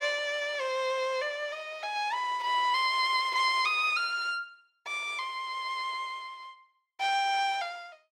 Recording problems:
none

